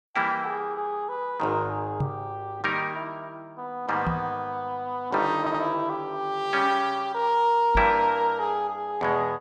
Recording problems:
microphone bump; at 2 s, at 4 s and at 8 s; peak +2 dB vs average level
stutter; at 5.5 s

